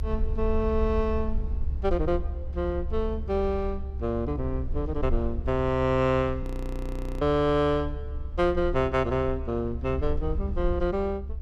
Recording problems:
rumble; below 70 Hz, SNR 6 dB
frozen audio; at 6.5 s for 1 s

